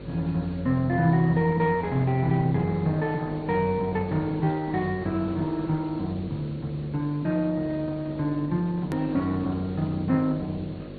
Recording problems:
low-pass filter; nothing above 4.5 kHz
codec artefacts; Opus, log-spectral distance 3 dB
electrical hum; 50 Hz, harmonics up to 600 Hz, SNR 14 dB
hiss; SNR 27 dB
hard cut with a click; at 9 s

